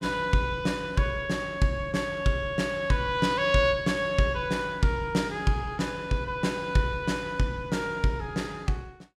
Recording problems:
none

